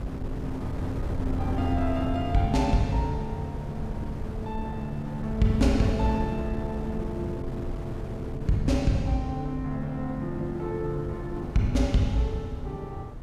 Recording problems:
wind on the microphone; below 190 Hz, SNR 7 dB

